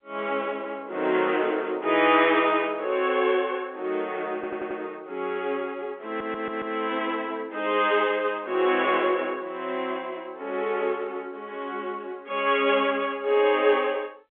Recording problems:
telephone audio; 280 Hz to 3.6 kHz, G.711
audio stuttering; at 4.5 s and at 6 s

